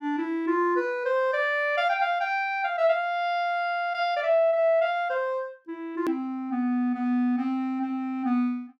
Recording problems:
hard cut with a click; at 6 s

